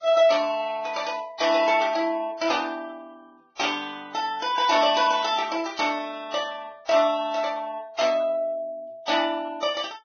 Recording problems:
lossy compression; Vorbis, log-spectral distance 3 dB, nothing above 6.3 kHz

